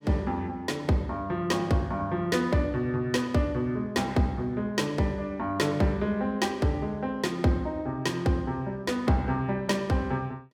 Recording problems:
none

